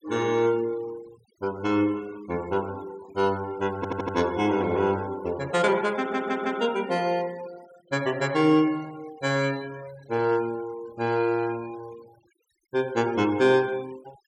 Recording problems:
noise reduction artefacts; signal-to-artefact ratio 22 dB
audio stuttering; at 4 s and at 6 s

